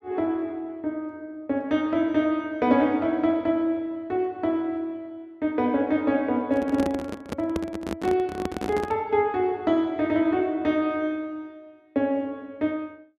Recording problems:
microphone handling noise; from 6.5 to 9 s; peak 0 dB vs average level

